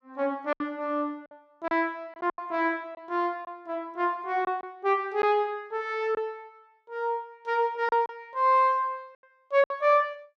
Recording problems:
lost packets; 5% of the sound replaced, filled with silence

